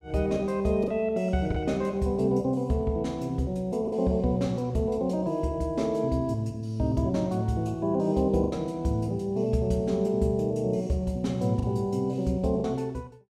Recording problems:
packet loss; 2% of the sound replaced, filled with the last packet

